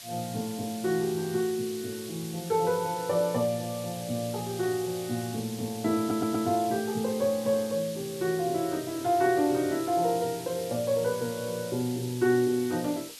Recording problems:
background hiss; SNR 13 dB
audio stuttering; at 6 s

